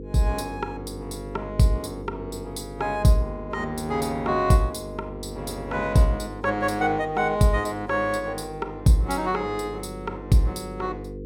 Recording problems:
hum; 50 Hz, harmonics up to 500 Hz, SNR 12 dB

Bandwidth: 16 kHz